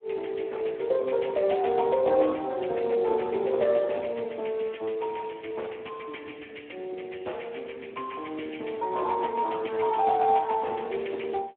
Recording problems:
phone line; 280 Hz to 3.6 kHz, Speex

